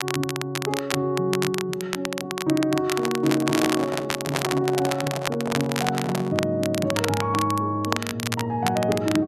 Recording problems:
crackling; vinyl, SNR 5 dB
microphone handling noise; from 3 to 6.5 s; peak +1 dB vs average level

